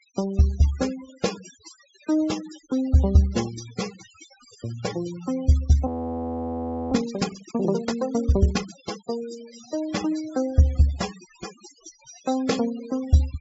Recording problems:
treble cut off; nothing above 8 kHz
noise reduction artefacts; signal-to-artefact ratio 17 dB
audio freezing; at 6 s for 1 s

